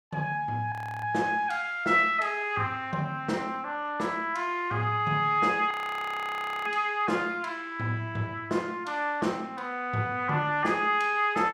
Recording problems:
frozen audio; at 0.5 s and at 5.5 s for 1 s

